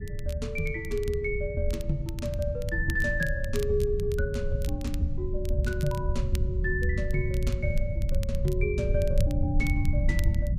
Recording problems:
rumble; below 100 Hz, SNR 0 dB
crackling; vinyl, SNR 17 dB

